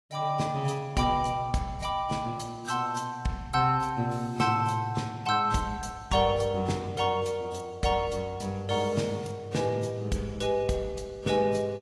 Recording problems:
lossy compression; AAC, log-spectral distance 2 dB, nothing above 11.6 kHz

